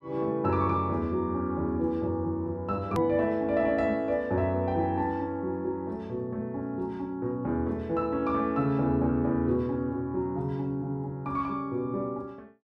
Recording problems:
click at an edit; at 3 s

